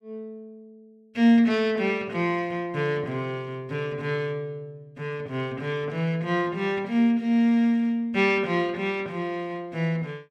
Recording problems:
none

